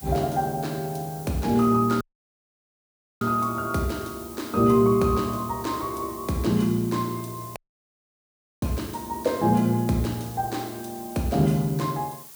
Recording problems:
background hiss; slope +1 dB per octave, SNR 17 dB
dropout; at 2 s for 1 s and at 7.5 s for 1 s

